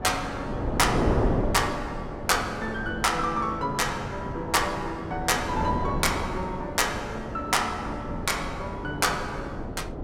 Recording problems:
wind on the microphone; below 480 Hz, SNR 5 dB

